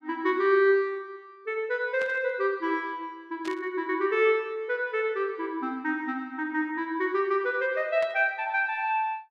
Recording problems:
static burst; at 2 s, at 3.5 s and at 8 s; peak -10 dB vs average level

